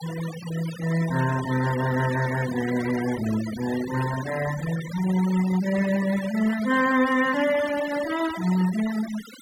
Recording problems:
noise reduction artefacts; signal-to-artefact ratio 12 dB

